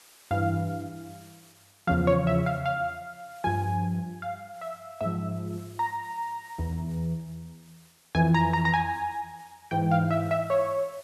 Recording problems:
hiss; slope 0 dB per octave, SNR 27 dB

